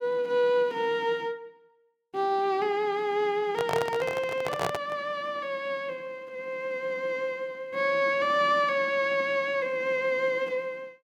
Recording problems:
microphone handling noise; from 3.5 to 5 s; peak +2 dB vs average level

